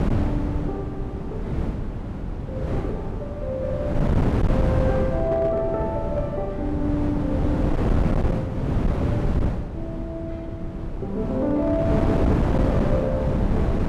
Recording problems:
distorted audio; hard clipping, signal-to-distortion ratio 11 dB
wind noise; below 270 Hz, SNR -2 dB

